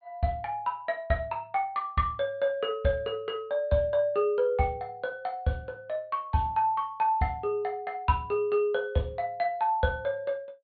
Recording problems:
treble cut off; nothing above 4.5 kHz

